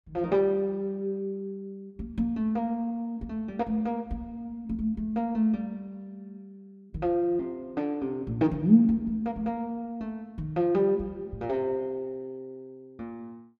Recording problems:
none

